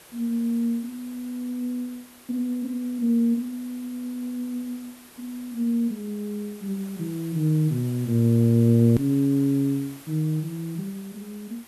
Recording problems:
hiss; slope -3 dB per octave, SNR 21 dB
click at an edit; at 9 s

